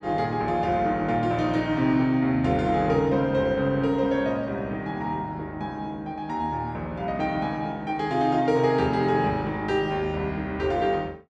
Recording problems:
none

